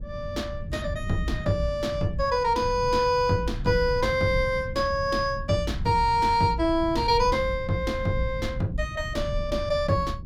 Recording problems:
rumble; below 120 Hz, SNR 10 dB

